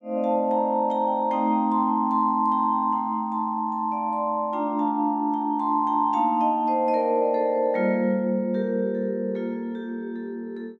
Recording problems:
none

